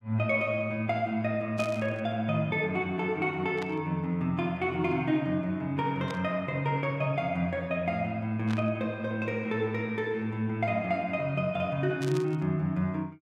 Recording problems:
burst of static; 5 times, first at 1.5 s; peak -7 dB vs average level

